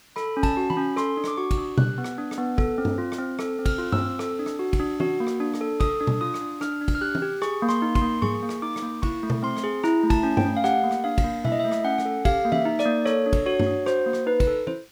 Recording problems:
hiss; slope 0 dB per octave, SNR 27 dB

